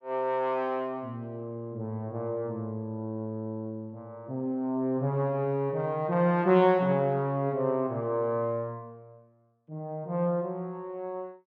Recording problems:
none

